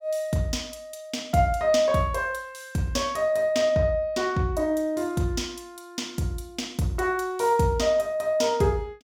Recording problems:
none

